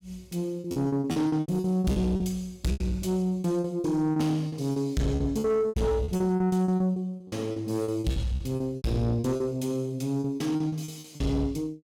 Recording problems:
distorted audio; soft clipping, signal-to-distortion ratio 10 dB
packet loss; 17% of the sound replaced, filled with repeated pitch periods

